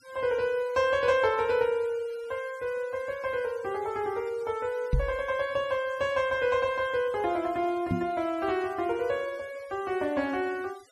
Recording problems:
noise reduction artefacts; signal-to-artefact ratio 23 dB
knock on the microphone; at 5 s and at 8 s; peak +6 dB vs average level

